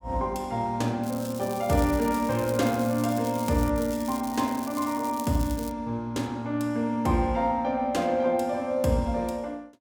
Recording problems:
crackle; from 1 to 3.5 s and from 4 to 5.5 s; loose cable, SNR 15 dB

